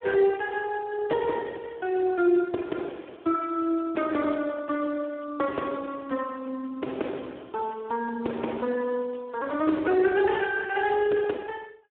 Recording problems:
phone line; 260 Hz to 3.5 kHz, Speex

